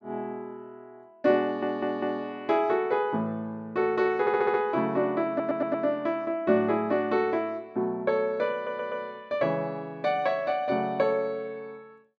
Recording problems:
audio stuttering; 4 times, first at 1.5 s

